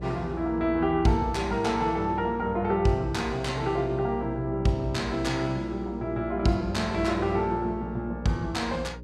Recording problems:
electrical hum; 60 Hz, harmonics up to 600 Hz, SNR 13 dB

